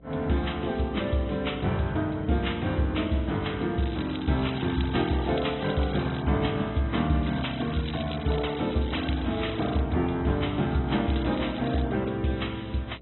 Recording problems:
treble cut off; nothing above 4 kHz
lossy compression; AAC, log-spectral distance 8 dB
electrical hum; 60 Hz, harmonics up to 720 Hz, SNR 25 dB
crackle; from 4 to 6.5 s, from 7 to 10 s and at 11 s; loose cable, SNR 16 dB

